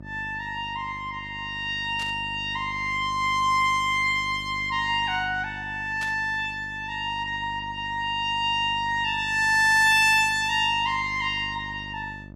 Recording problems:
hum; 50 Hz, harmonics up to 950 Hz, SNR 19 dB
static burst; at 2 s and at 6 s; peak -9 dB vs average level

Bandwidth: 14 kHz